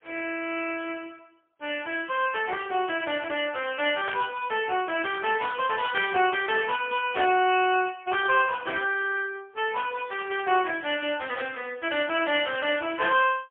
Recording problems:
telephone audio; 280 Hz to 3.4 kHz, AMR-NB, then MP3
burst of static; at 4 s and at 6 s; peak -2 dB vs average level

